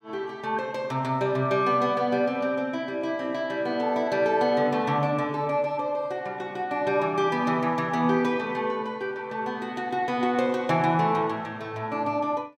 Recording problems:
none

